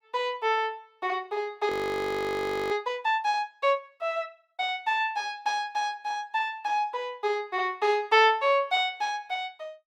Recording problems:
frozen audio; at 1.5 s for 1 s

